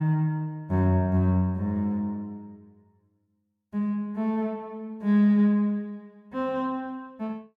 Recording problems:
none

